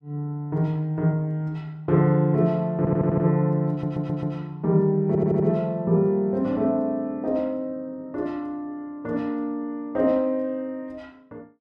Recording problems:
audio stuttering; at 3 s, at 3.5 s and at 5 s

